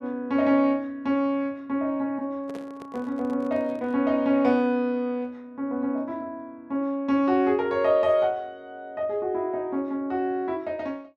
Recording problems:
handling noise; from 2.5 to 4 s; peak -11 dB vs average level

